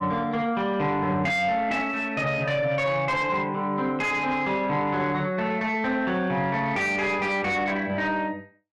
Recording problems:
distorted audio; soft clipping, signal-to-distortion ratio 10 dB

